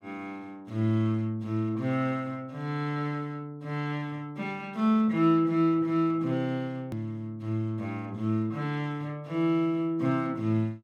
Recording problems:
click at an edit; at 7 s

